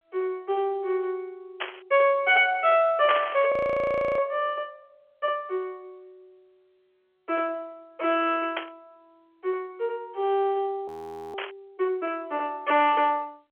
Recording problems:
telephone audio; 320 Hz to 3.5 kHz, G.711
distorted audio; soft clipping, signal-to-distortion ratio 11 dB
burst of static; 4 times, first at 1.5 s; peak +2 dB vs average level
audio freezing; at 3.5 s for 0.5 s and at 11 s

